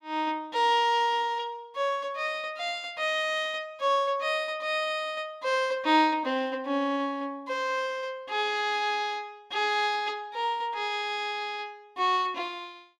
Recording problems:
none

